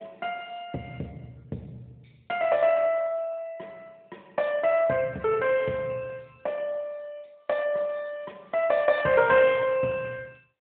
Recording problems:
telephone audio; 150 Hz to 3.3 kHz, AMR-NB

